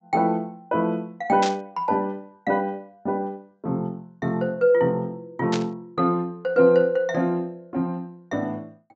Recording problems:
treble missing; nothing above 8 kHz
burst of static; at 1.5 s and at 5.5 s; peak -1 dB vs average level

